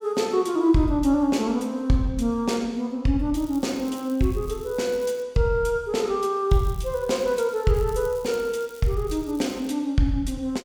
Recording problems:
crackle; from 3.5 to 5 s and from 6.5 to 9.5 s; loose cable, SNR 24 dB

